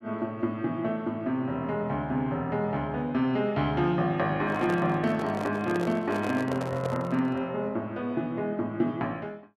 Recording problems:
handling noise; from 4.5 to 7.5 s; peak -3 dB vs average level

